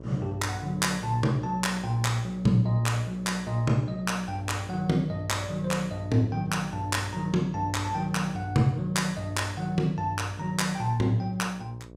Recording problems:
hum; 60 Hz, harmonics up to 720 Hz, SNR 17 dB

